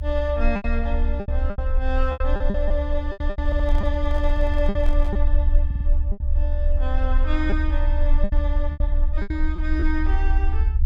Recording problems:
rumble; below 66 Hz, strongest tone 26 Hz, SNR -5 dB
lost packets; 10% of the sound replaced, filled with repeated pitch periods
microphone handling noise; from 3.5 to 5 s; peak -8 dB vs average level
audio stuttering; at 3.5 s and at 5.5 s

